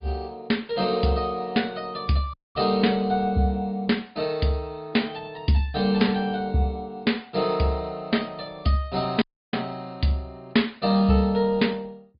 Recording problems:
treble cut off; nothing above 4.8 kHz
codec artefacts; Opus, log-spectral distance 3 dB
audio cutting out; at 2.5 s and at 9 s

